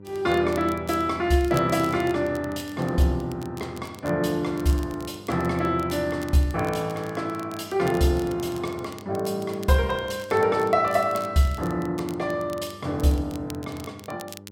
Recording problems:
hum; 50 Hz, harmonics up to 1 kHz, SNR 20 dB
crackle; vinyl, SNR 21 dB

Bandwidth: 16.5 kHz